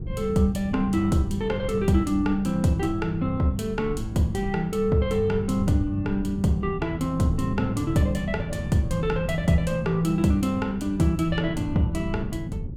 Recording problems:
wind on the microphone; below 170 Hz, SNR 10 dB

